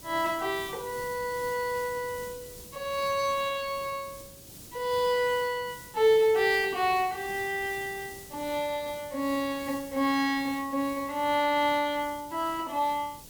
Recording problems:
hiss; SNR 16 dB

